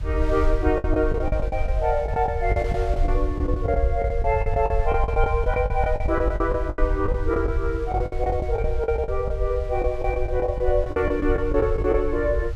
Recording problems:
rumble; below 68 Hz, SNR 3 dB
wind on the microphone; below 3.3 kHz, SNR 23 dB
lost packets; 15% of the sound replaced, filled with the last packet

